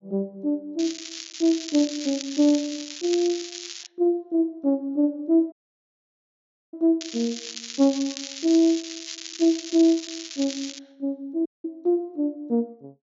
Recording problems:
treble cut off; nothing above 7.2 kHz
crackling; from 1 to 4 s and from 7 to 11 s; loose cable, SNR 10 dB
dropout; at 5.5 s for 1 s and at 11 s

